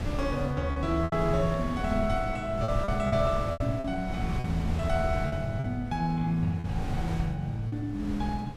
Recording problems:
wind on the microphone; below 150 Hz, SNR 6 dB
lost packets; 7% of the sound replaced, filled with repeated pitch periods

